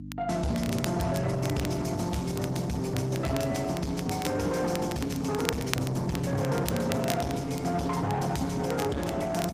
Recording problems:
lossy compression; Opus, log-spectral distance 4 dB, nothing above 15.1 kHz
distortion; soft clipping, signal-to-distortion ratio 10 dB
hum; 50 Hz, harmonics up to 300 Hz, SNR 11 dB
crackle; vinyl, SNR 11 dB

